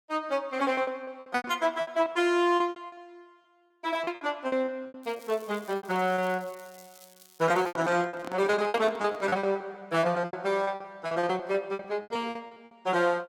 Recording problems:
packet loss; 18% of the sound replaced, filled with repeated pitch periods
crackle; from 5 to 7.5 s; loose cable, SNR 24 dB
microphone handling noise; from 7.5 to 9.5 s; peak -7 dB vs average level

